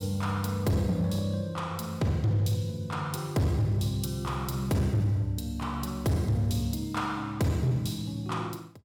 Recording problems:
distortion; hard clipping, signal-to-distortion ratio 11 dB

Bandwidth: 16.5 kHz